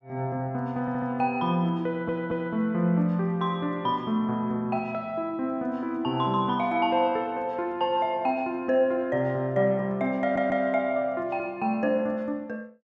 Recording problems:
audio stuttering; at 1 s, at 2 s and at 10 s

